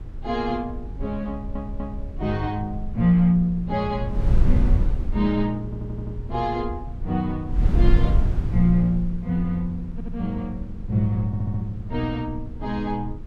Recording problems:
wind on the microphone; below 76 Hz, SNR 3 dB
audio stuttering; 4 times, first at 1.5 s

